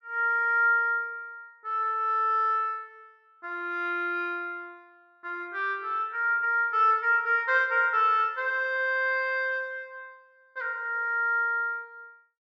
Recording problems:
none

